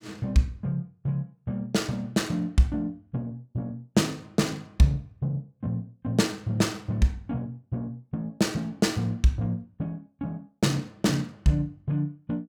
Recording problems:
none

